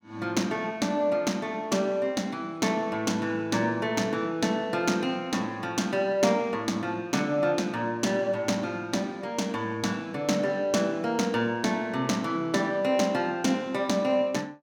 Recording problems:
none

